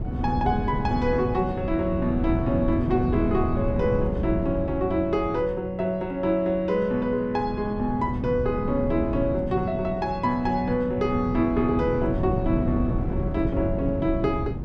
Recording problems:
wind noise; below 210 Hz, SNR 5 dB

